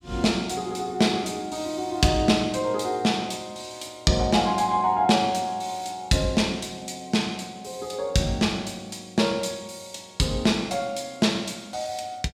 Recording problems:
none

